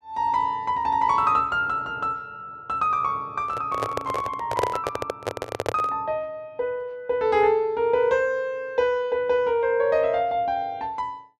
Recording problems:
microphone handling noise; from 3.5 to 6 s; peak +3 dB vs average level

